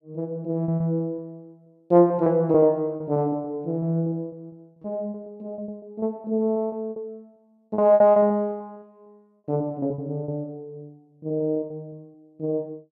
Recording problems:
lost packets; 13% of the sound replaced, filled with repeated pitch periods

